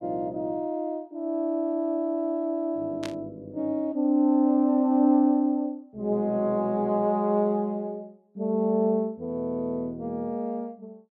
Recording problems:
burst of static; at 3 s; peak -8 dB vs average level

